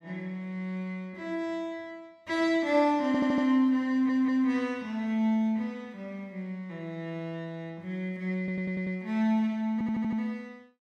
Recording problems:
stutter; 4 times, first at 3 s

